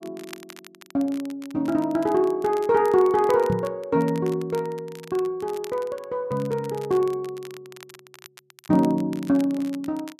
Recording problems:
crackling; vinyl, SNR 22 dB
microphone thump; at 3.5 s; peak +1 dB vs average level

